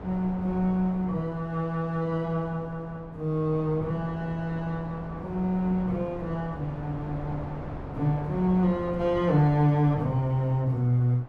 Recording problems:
wind on the microphone; below 640 Hz, SNR 14 dB

